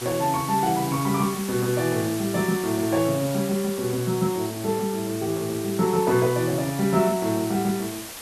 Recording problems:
background hiss; slope -1 dB per octave, SNR 11 dB

